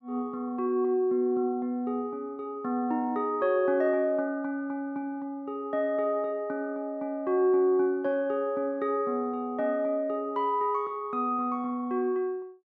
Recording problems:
none

